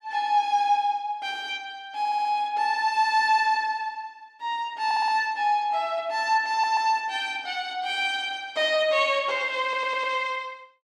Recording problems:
stutter; 4 times, first at 2 s

